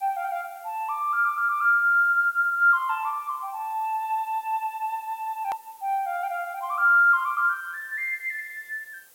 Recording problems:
hiss; slope -1 dB per octave, SNR 27 dB
click at an edit; at 5.5 s

